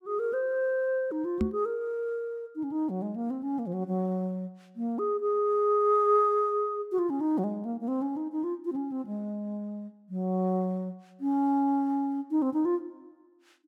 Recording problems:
knock on the microphone; at 1.5 s; peak +4 dB vs average level

